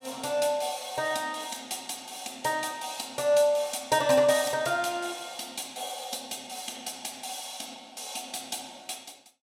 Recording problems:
none

